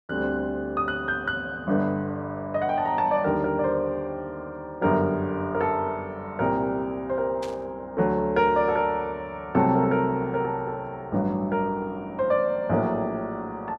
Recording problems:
static burst; at 7.5 s; peak -10 dB vs average level

